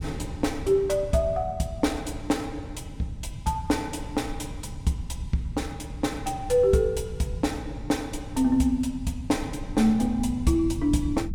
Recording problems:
rumble; below 130 Hz, SNR 12 dB

